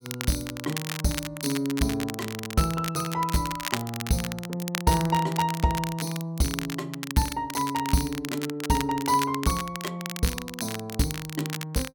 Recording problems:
crackling; vinyl, SNR 8 dB

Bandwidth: 17.5 kHz